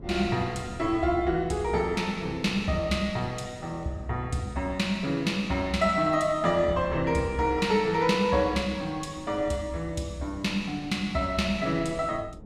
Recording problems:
wind on the microphone; below 260 Hz, SNR 18 dB

